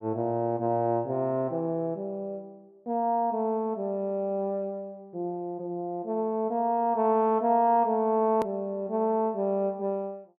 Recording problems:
click at an edit; at 8.5 s

